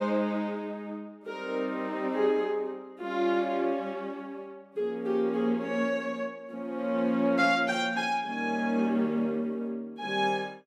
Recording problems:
none

